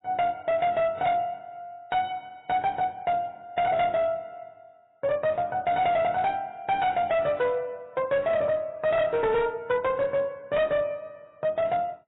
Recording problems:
codec artefacts; AAC, log-spectral distance 2 dB, nothing above 3.8 kHz
distorted audio; hard clipping, signal-to-distortion ratio 12 dB

